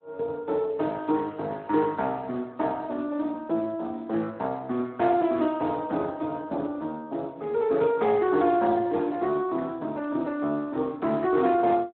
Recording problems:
phone line; 220 Hz to 3.8 kHz, Speex

